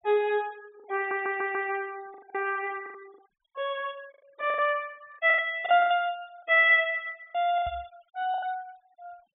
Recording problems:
treble missing; nothing above 4 kHz
noise reduction artefacts; signal-to-artefact ratio 27 dB
lost packets; 10% of the sound replaced, filled with the last packet
audio stuttering; at 1 s
knock on the microphone; at 7.5 s; peak -13 dB vs average level

